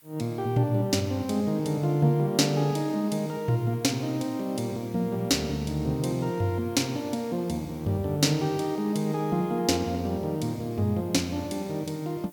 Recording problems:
hiss; slope 0 dB per octave, SNR 26 dB

